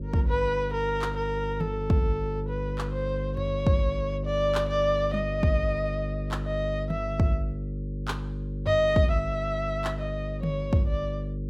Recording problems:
hum; 50 Hz, harmonics up to 550 Hz, SNR 5 dB

